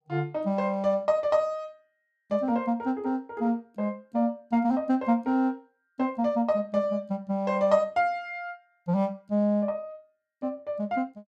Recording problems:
none

